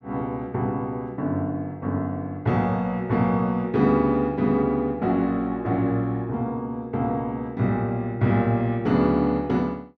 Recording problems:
none

